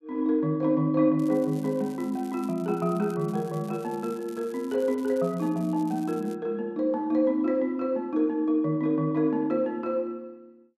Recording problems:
crackling; from 1 to 6.5 s; loose cable, SNR 26 dB

